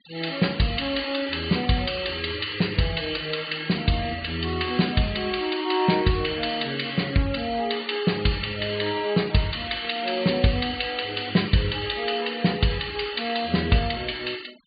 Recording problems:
low-pass filter; nothing above 4.7 kHz
noise reduction artefacts; signal-to-artefact ratio 18 dB

